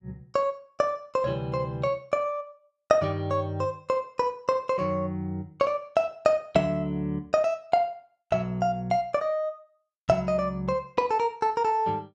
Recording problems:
none

